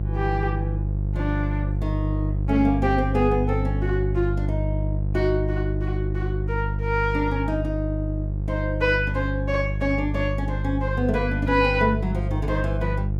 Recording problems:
mains hum; 50 Hz, harmonics up to 500 Hz, SNR 1 dB

